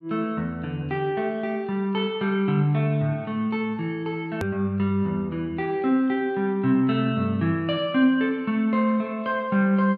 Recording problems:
edit click; at 4.5 s

